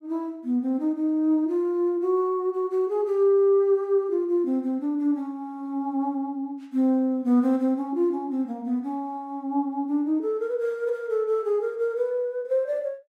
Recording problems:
none

